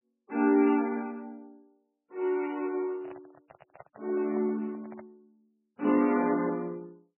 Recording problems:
codec artefacts; MP3, log-spectral distance 3 dB, nothing above 2.4 kHz
microphone handling noise; from 3 to 5 s; peak -12 dB vs average level

